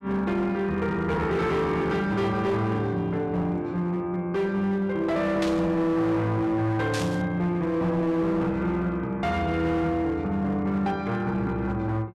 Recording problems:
distorted audio; hard clipping, signal-to-distortion ratio 12 dB
burst of static; at 5.5 s and at 7 s; peak -3 dB vs average level

